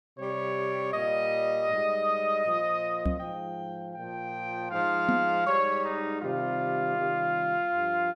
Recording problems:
knock on the microphone; at 3 s and at 5 s; peak +5 dB vs average level

